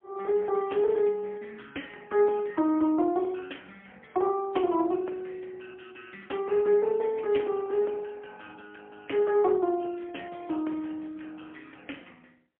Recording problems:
phone line; 240 Hz to 3.3 kHz, AMR-NB, then MP3

